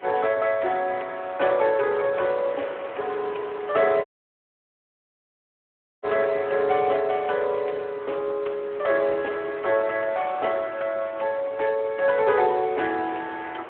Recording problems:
phone line; 300 Hz to 3.3 kHz, Speex
wind noise; below 1.7 kHz, SNR 18 dB
audio cutting out; at 4 s for 2 s

